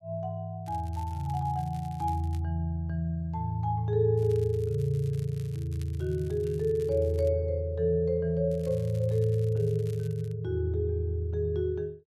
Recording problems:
crackling; from 0.5 to 2.5 s, from 4 to 7.5 s and from 8.5 to 10 s; loose cable, SNR 26 dB

